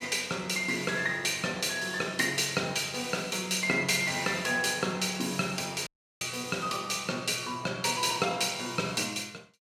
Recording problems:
dropout; at 6 s

